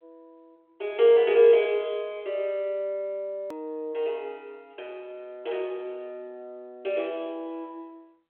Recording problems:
telephone audio; 300 Hz to 3.7 kHz, G.726
click at an edit; at 3.5 s

